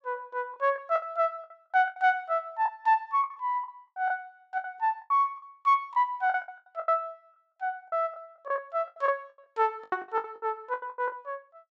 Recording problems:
lost packets; 15% of the sound replaced, filled with the last packet

